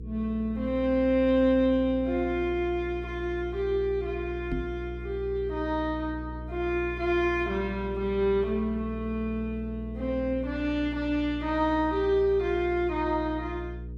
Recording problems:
hum; 60 Hz, harmonics up to 480 Hz, SNR 11 dB
microphone thump; at 4.5 s; peak 0 dB vs average level

